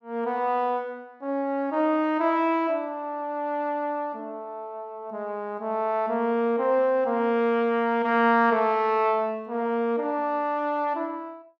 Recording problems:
none

